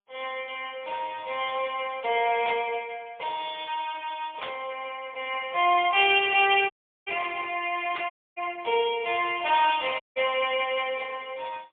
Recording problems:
phone line; 320 Hz to 3.5 kHz, AMR-NB, then MP3
static burst; at 2.5 s, at 4.5 s and at 8 s; peak -3 dB vs average level
audio cutting out; at 6.5 s, at 8 s and at 10 s

